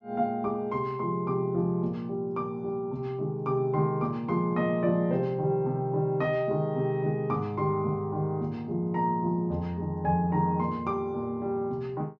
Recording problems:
treble cut off; nothing above 8 kHz

